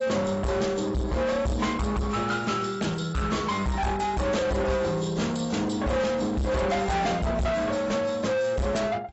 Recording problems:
lossy compression; AAC, log-spectral distance 5 dB, nothing above 7.8 kHz
distorted audio; soft clipping, signal-to-distortion ratio 6 dB

